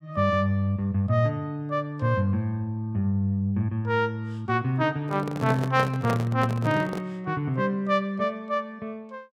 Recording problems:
microphone handling noise; from 5 to 7 s; peak 0 dB vs average level

